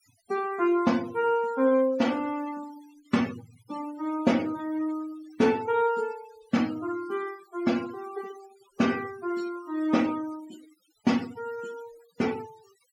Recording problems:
denoising artefacts; signal-to-artefact ratio 19 dB

